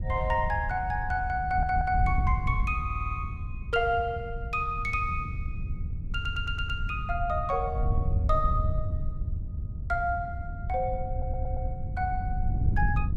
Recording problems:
wind on the microphone; below 96 Hz, SNR 2 dB
audio stuttering; 4 times, first at 1.5 s

